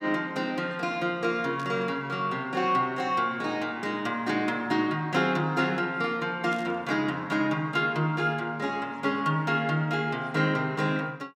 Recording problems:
burst of static; at 1.5 s and at 6.5 s; peak -14 dB vs average level

